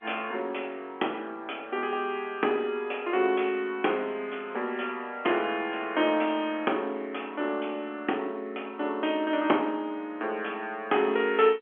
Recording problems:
phone line; 240 Hz to 3.4 kHz, G.711

